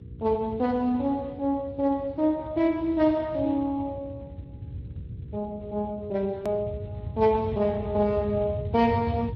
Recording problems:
lossy compression; Speex, then MP3, log-spectral distance 2 dB
electrical hum; 60 Hz, harmonics up to 480 Hz, SNR 21 dB
low-frequency rumble; below 130 Hz, SNR 11 dB
hard cut with a click; at 6.5 s

